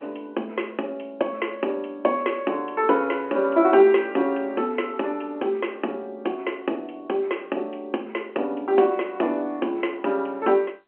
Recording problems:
phone line; 240 Hz to 3.1 kHz, G.711

